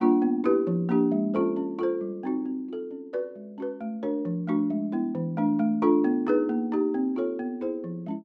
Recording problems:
none

